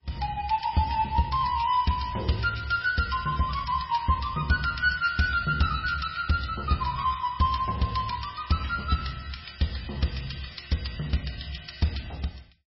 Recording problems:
lossy compression; MP3, log-spectral distance 7 dB, nothing above 5.5 kHz

